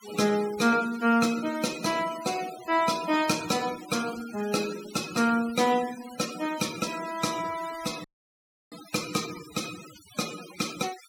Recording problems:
noise reduction artefacts; signal-to-artefact ratio 12 dB
audio cutting out; at 8 s for 0.5 s

